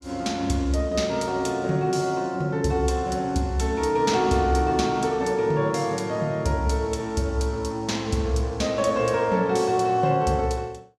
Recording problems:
none

